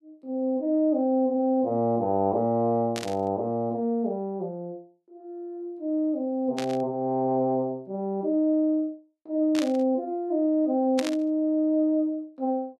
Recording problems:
burst of static; 4 times, first at 3 s; peak -2 dB vs average level

